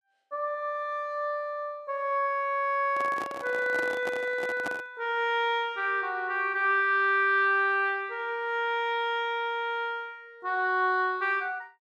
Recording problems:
handling noise; from 3 to 5 s; peak -4 dB vs average level

